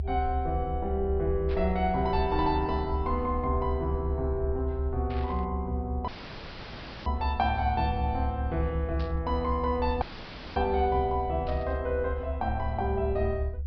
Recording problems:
treble missing; nothing above 5.5 kHz
rumble; below 74 Hz, strongest tone 72 Hz, SNR 3 dB
static burst; 4 times, first at 1.5 s; peak -11 dB vs average level
dropout; at 6 s for 1 s and at 10 s for 0.5 s

